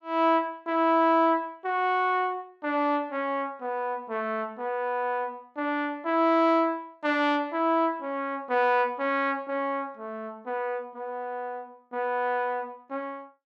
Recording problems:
none

